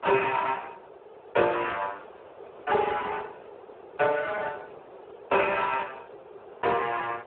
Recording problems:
telephone audio; 340 Hz to 2 kHz, Speex
background hiss; SNR 25 dB
wind noise; below 590 Hz, SNR 20 dB

